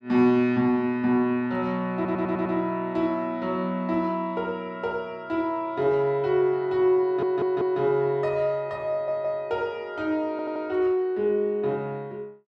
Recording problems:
stutter; 4 times, first at 2 s

